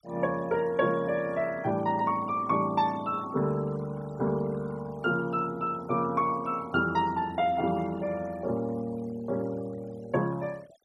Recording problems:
denoising artefacts; signal-to-artefact ratio 22 dB

